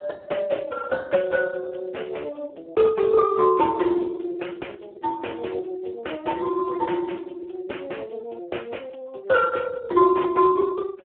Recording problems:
telephone audio; 300 Hz to 2.8 kHz, Speex

